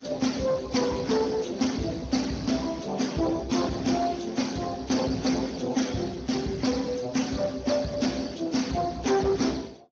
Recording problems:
lossy compression; Vorbis, then Speex, log-spectral distance 6 dB, nothing above 6.3 kHz
distorted audio; soft clipping, signal-to-distortion ratio 12 dB

